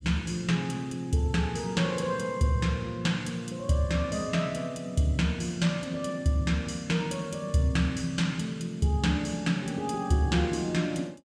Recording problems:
none

